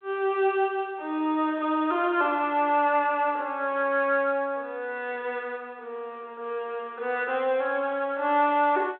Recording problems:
telephone audio; 320 Hz to 3.5 kHz, G.726

